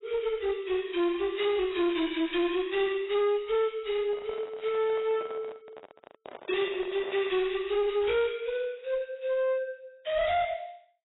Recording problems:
codec artefacts; AAC, log-spectral distance 4 dB, nothing above 3.9 kHz
distorted audio; hard clipping, uneven, signal-to-distortion ratio 9 dB
microphone handling noise; from 4 to 7.5 s; peak -9 dB vs average level

